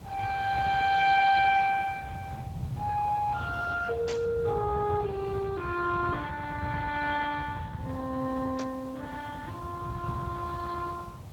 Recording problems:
lossy codec; Speex, log-spectral distance 4 dB
background hiss; SNR 25 dB
low-frequency rumble; below 170 Hz, SNR 11 dB
static burst; at 4 s and at 8.5 s; peak -7 dB vs average level

